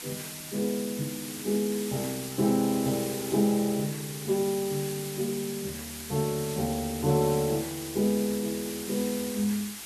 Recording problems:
hiss; SNR 8 dB

